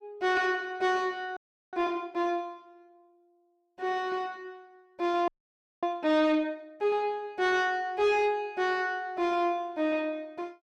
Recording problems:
distortion; soft clipping, signal-to-distortion ratio 11 dB
frozen audio; at 1.5 s and at 5.5 s for 0.5 s

